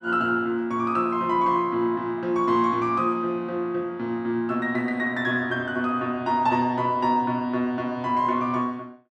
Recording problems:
none

